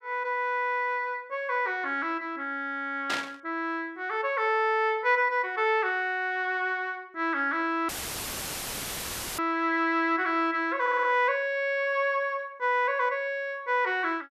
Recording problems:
burst of static; at 3 s; peak 0 dB vs average level
dropout; at 8 s for 1.5 s; filled with static
audio stuttering; at 11 s

